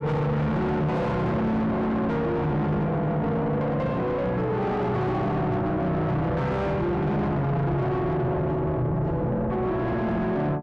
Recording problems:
distortion; soft clipping, signal-to-distortion ratio 5 dB

